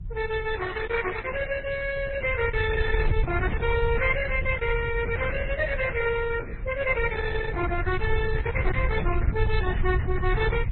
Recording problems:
lossy codec; Opus, then MP3, log-spectral distance 4 dB, nothing above 4 kHz
rumble; below 84 Hz, SNR 3 dB

